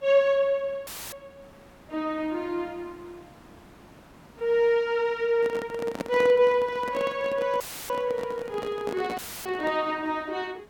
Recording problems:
hiss; slope -6 dB per octave, SNR 26 dB
audio cutting out; at 1 s, at 7.5 s and at 9 s; filled with static
handling noise; from 5.5 to 10 s; peak -1 dB vs average level

